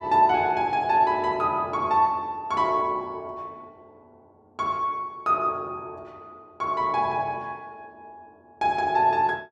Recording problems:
none

